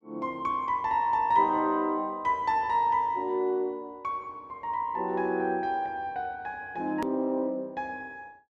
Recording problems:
edit click; at 7 s

